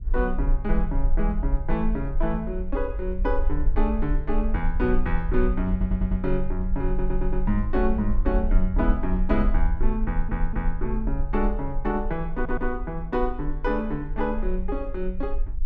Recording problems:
low-frequency rumble; below 42 Hz, strongest tone 18 Hz, SNR 2 dB
audio stuttering; 4 times, first at 5.5 s

